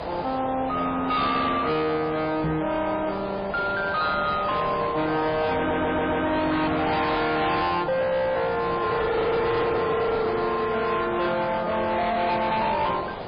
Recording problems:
codec artefacts; MP3, log-spectral distance 5 dB, nothing above 4.5 kHz
distorted audio; hard clipping, uneven, signal-to-distortion ratio 7 dB
hiss; SNR 9 dB
knock on the microphone; at 2.5 s; peak +1 dB vs average level
audio stuttering; at 5.5 s

